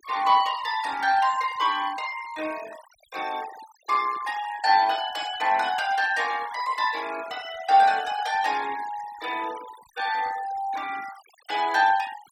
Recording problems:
denoising artefacts; signal-to-artefact ratio 18 dB

